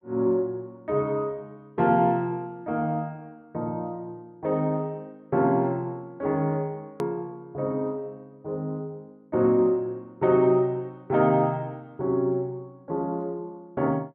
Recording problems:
click at an edit; at 7 s

